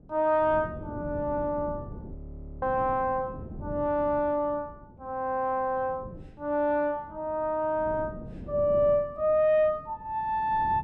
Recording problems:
wind noise; below 270 Hz, SNR 16 dB
frozen audio; at 2 s

